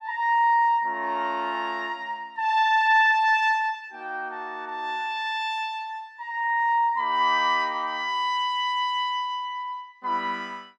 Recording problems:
none

